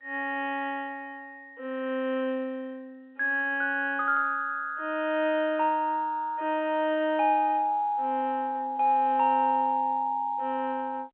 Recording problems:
telephone audio; 280 Hz to 3.3 kHz, G.711

